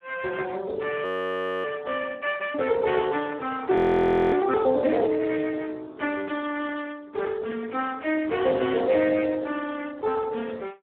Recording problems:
phone line; 240 Hz to 3 kHz, Speex
audio freezing; at 1 s for 0.5 s and at 4 s for 0.5 s

